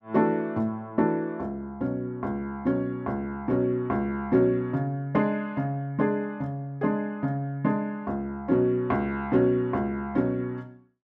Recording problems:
none

